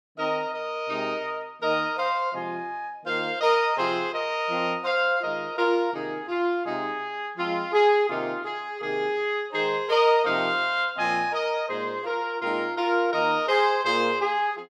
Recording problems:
none

